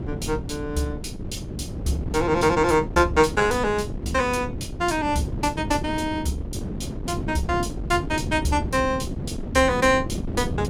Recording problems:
wind noise; below 280 Hz, SNR 8 dB

